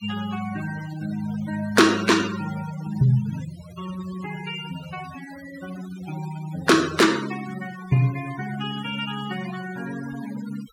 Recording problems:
denoising artefacts; signal-to-artefact ratio 14 dB

